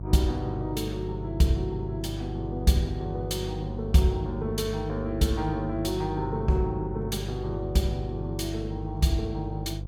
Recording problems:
hum; 50 Hz, harmonics up to 500 Hz, SNR 6 dB

